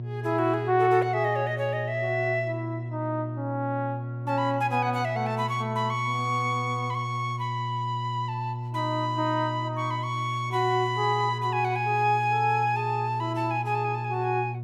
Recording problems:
hum; 60 Hz, harmonics up to 360 Hz, SNR 7 dB

